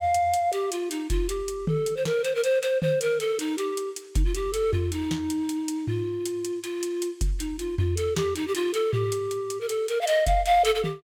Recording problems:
none

